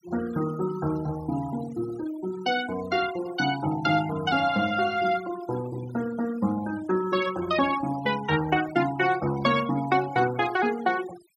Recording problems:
noise reduction artefacts; signal-to-artefact ratio 16 dB

